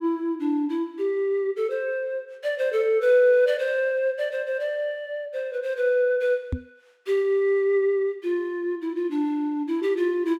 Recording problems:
knock on the microphone; at 6.5 s; peak 0 dB vs average level

